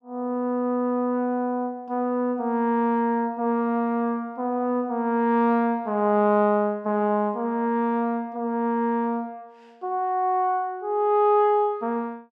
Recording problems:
none

